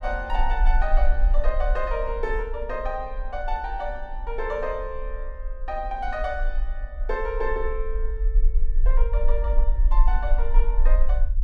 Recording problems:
rumble; below 40 Hz, strongest tone 22 Hz, SNR -3 dB

